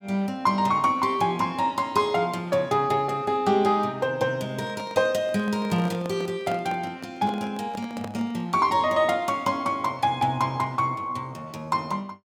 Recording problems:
handling noise; from 4.5 to 8.5 s; peak -7 dB vs average level

